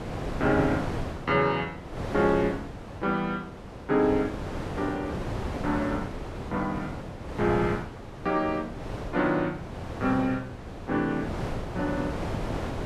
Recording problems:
wind on the microphone; below 690 Hz, SNR 7 dB

